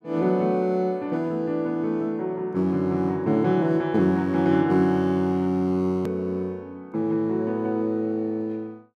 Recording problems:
edit click; at 6 s

